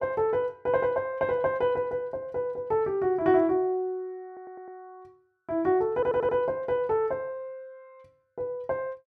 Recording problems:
stutter; at 4.5 s and at 6 s

